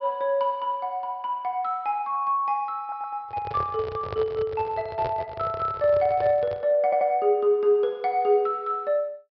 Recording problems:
treble missing; nothing above 5.5 kHz
stutter; at 3 s and at 7 s
handling noise; from 3 to 6.5 s; peak -4 dB vs average level

